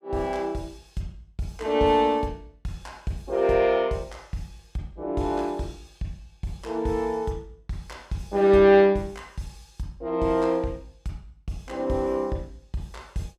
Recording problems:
none

